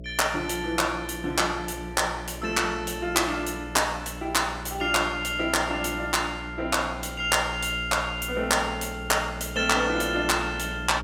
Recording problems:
hum; 60 Hz, harmonics up to 660 Hz, SNR 13 dB

